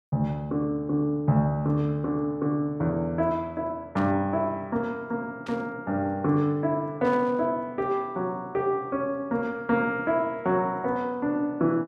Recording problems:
static burst; at 4 s, at 5.5 s and at 7 s; peak -11 dB vs average level

